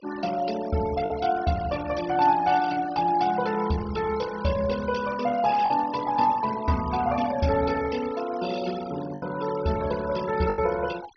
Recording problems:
low-pass filter; nothing above 5.8 kHz
denoising artefacts; signal-to-artefact ratio 15 dB
packet loss; 2% of the sound replaced, filled with the last packet

